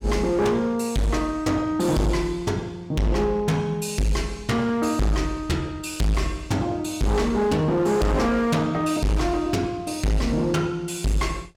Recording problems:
distortion; hard clipping, signal-to-distortion ratio 6 dB

